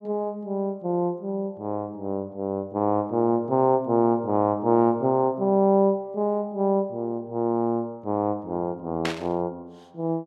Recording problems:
burst of static; at 9 s; peak 0 dB vs average level

